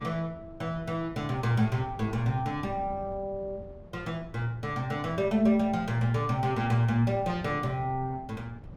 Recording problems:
wind on the microphone; below 200 Hz, SNR 18 dB

